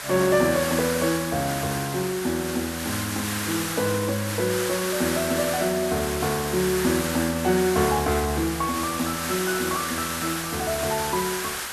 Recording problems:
hiss; SNR 4 dB

